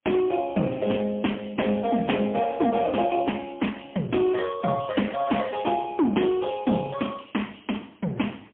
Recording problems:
telephone audio; 150 Hz to 3.3 kHz, AMR-NB, then MP3

